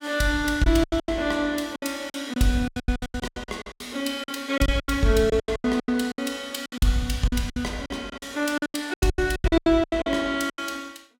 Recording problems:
packet loss; 21% of the sound replaced, filled with silence

